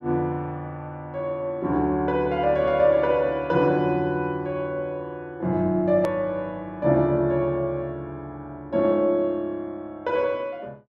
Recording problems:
edit click; at 6 s

